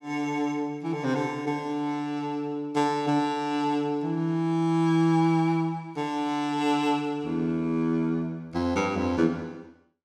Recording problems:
none

